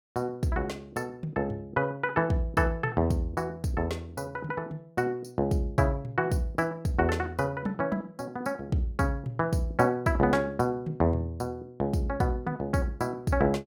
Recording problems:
none

